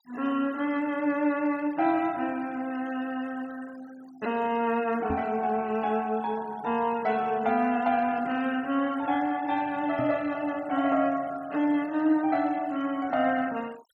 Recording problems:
denoising artefacts; signal-to-artefact ratio 23 dB
microphone bump; at 5 s and at 10 s; peak -2 dB vs average level

